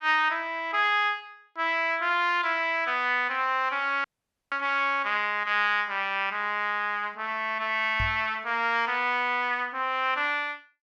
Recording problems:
audio cutting out; at 4 s
knock on the microphone; at 8 s; peak -3 dB vs average level

